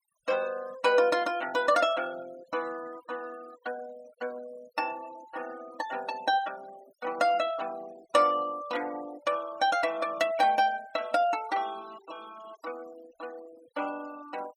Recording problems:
noise reduction artefacts; signal-to-artefact ratio 20 dB

